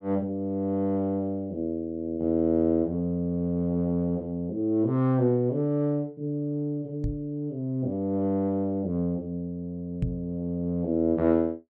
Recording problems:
microphone bump; at 7 s and at 10 s; peak +3 dB vs average level

